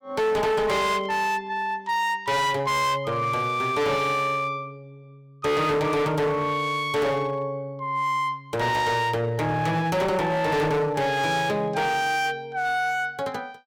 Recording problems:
distorted audio; hard clipping, uneven, signal-to-distortion ratio 8 dB

